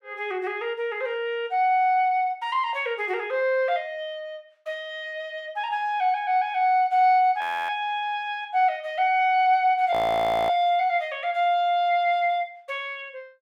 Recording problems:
frozen audio; at 7.5 s and at 10 s for 0.5 s

